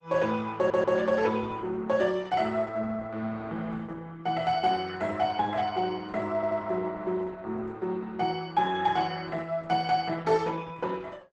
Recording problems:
codec artefacts; Opus, log-spectral distance 3 dB, nothing above 11.6 kHz
stutter; at 0.5 s and at 6.5 s

